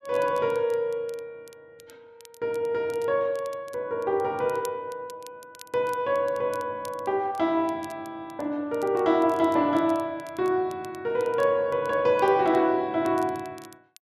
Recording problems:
crackle; vinyl, SNR 26 dB

